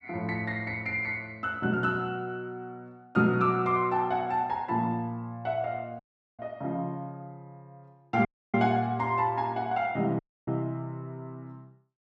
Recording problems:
audio cutting out; at 6 s, at 8.5 s and at 10 s

